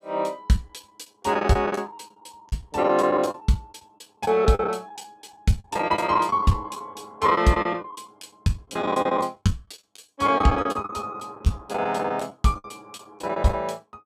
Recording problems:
lost packets; 16% of the sound replaced, filled with the last packet

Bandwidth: 14.5 kHz